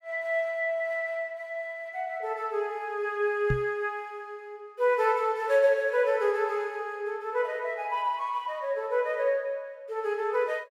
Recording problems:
knock on the microphone; at 3.5 s; peak +3 dB vs average level

